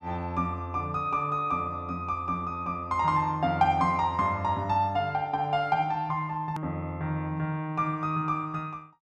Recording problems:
edit click; at 6.5 s

